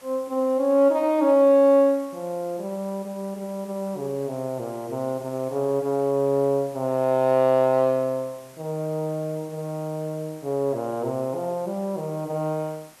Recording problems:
hiss; slope -2 dB per octave, SNR 25 dB

